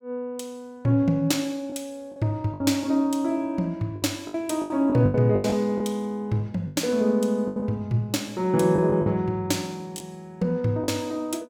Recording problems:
lost packets; 8% of the sound replaced, filled with the last packet

